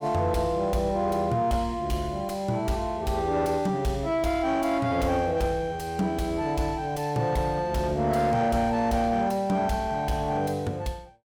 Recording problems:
distorted audio; soft clipping, signal-to-distortion ratio 11 dB

